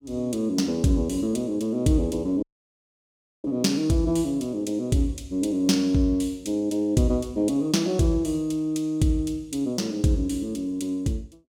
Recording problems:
dropout; at 2.5 s for 1 s

